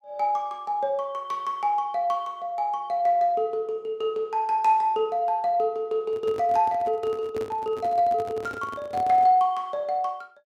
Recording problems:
handling noise; from 6 to 9.5 s; peak -8 dB vs average level

